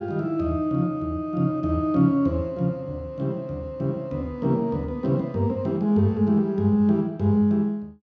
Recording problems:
none

